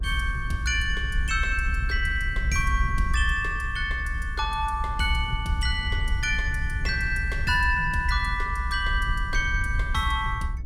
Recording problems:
low-frequency rumble; below 64 Hz, SNR 4 dB

